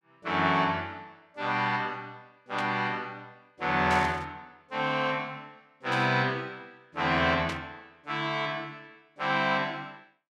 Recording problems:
static burst; 4 times, first at 2.5 s; peak -4 dB vs average level

